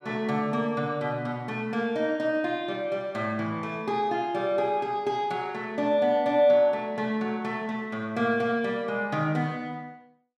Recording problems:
none

